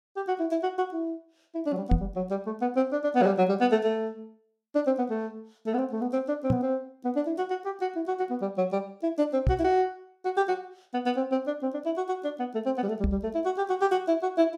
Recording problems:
microphone thump; 4 times, first at 2 s; peak +8 dB vs average level

